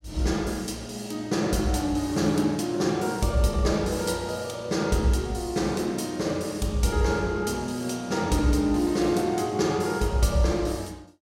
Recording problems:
none

